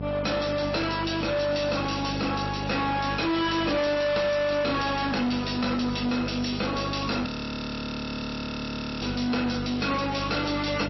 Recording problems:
lossy codec; MP3, log-spectral distance 10 dB, nothing above 5.7 kHz
distorted audio; soft clipping, signal-to-distortion ratio 7 dB
hum; 50 Hz, harmonics up to 1.1 kHz, SNR 7 dB
frozen audio; at 7.5 s for 2 s

